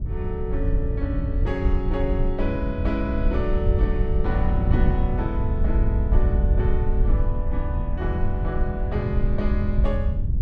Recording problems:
rumble; below 70 Hz, SNR -3 dB
wind noise; below 110 Hz, SNR 1 dB

